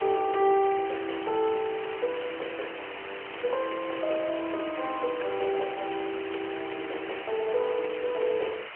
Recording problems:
telephone audio; 340 Hz to 3.1 kHz, AMR-NB
background hiss; SNR 10 dB

